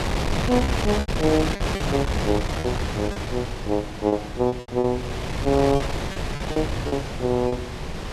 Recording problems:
wind noise; below 950 Hz, SNR 2 dB
packet loss; 10% of the sound replaced, filled with repeated pitch periods

